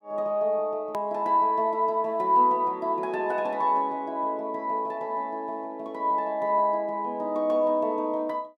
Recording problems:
hard cut with a click; at 1 s

